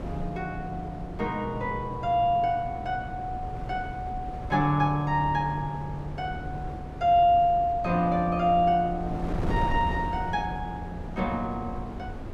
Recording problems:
wind on the microphone; below 320 Hz, SNR 10 dB

